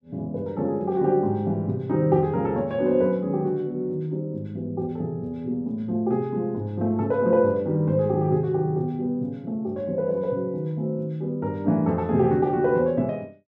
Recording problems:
none

